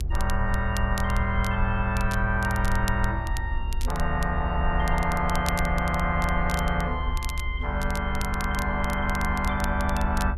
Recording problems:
electrical hum; 60 Hz, harmonics up to 840 Hz, SNR 20 dB
rumble; below 70 Hz, SNR 4 dB
crackle; vinyl, SNR 14 dB

